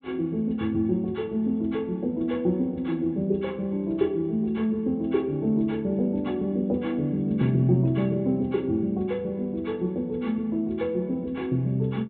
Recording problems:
low-pass filter; nothing above 4 kHz

